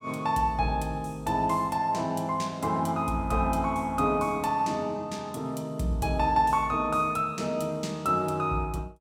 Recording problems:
none

